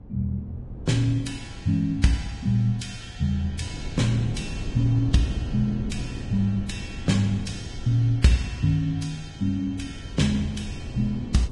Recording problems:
lossy compression; Vorbis, log-spectral distance 2 dB, nothing above 10.4 kHz
wind noise; below 200 Hz, SNR 11 dB

